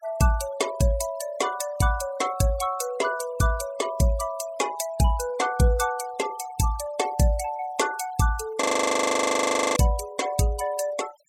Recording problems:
noise reduction artefacts; signal-to-artefact ratio 14 dB
audio freezing; at 8.5 s for 1 s

